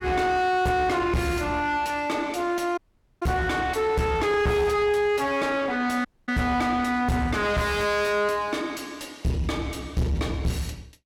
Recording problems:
distortion; soft clipping, signal-to-distortion ratio 6 dB
dropout; at 3 s and at 6 s

